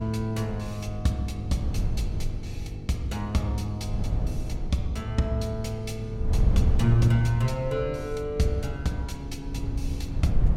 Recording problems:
electrical hum; 50 Hz, harmonics up to 500 Hz, SNR 14 dB
wind on the microphone; below 98 Hz, SNR 4 dB

